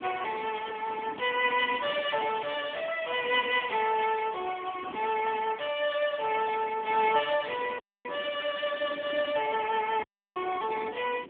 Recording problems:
phone line; 220 Hz to 3.4 kHz, AMR-NB
wind on the microphone; below 410 Hz, SNR 17 dB
audio cutting out; at 8 s and at 10 s

